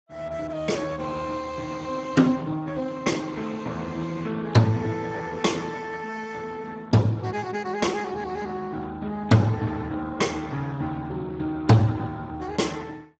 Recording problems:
codec artefacts; Speex, log-spectral distance 4 dB, nothing above 7.3 kHz

